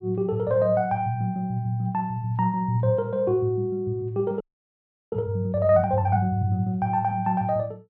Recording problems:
low-pass filter; nothing above 5.5 kHz
frozen audio; at 4.5 s for 0.5 s

